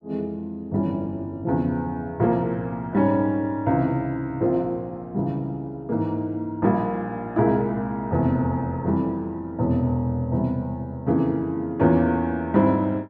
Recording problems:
none

